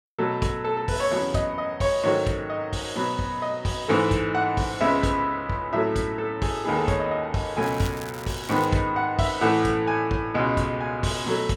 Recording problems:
crackle; from 7.5 to 8.5 s; loose cable, SNR 17 dB

